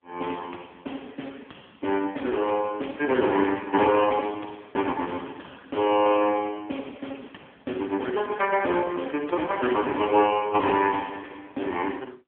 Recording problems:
telephone audio; 240 Hz to 3.3 kHz, AMR-NB

